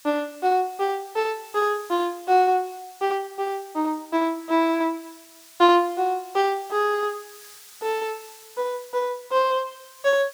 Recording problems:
hiss; slope +4 dB per octave, SNR 22 dB

